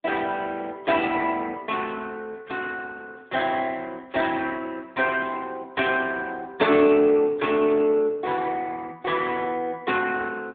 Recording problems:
telephone audio; 190 Hz to 3.6 kHz, AMR-NB

